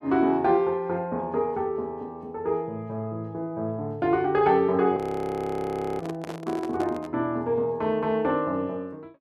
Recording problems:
audio freezing; at 5 s for 1 s
handling noise; from 6 to 7 s; peak -6 dB vs average level

